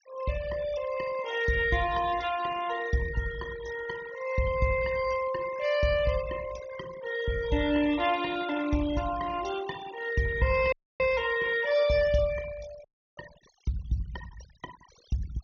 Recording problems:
treble missing; nothing above 6.6 kHz
denoising artefacts; signal-to-artefact ratio 16 dB
dropout; at 11 s and at 13 s

